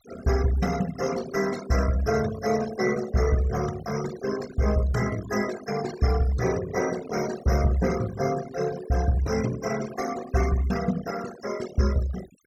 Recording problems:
noise reduction artefacts; signal-to-artefact ratio 13 dB

